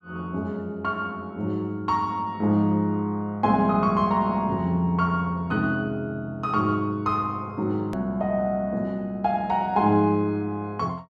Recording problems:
edit click; at 8 s

